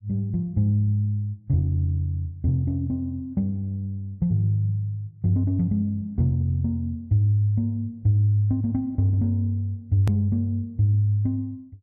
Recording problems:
click at an edit; at 10 s

